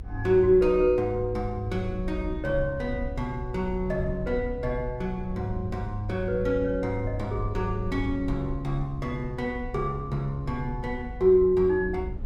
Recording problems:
low-frequency rumble; below 74 Hz, SNR 11 dB

